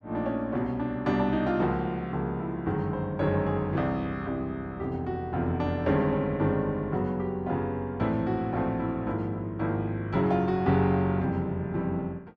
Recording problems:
none

